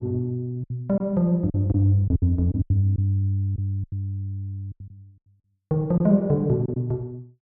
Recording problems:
lost packets; 9% of the sound replaced, filled with silence

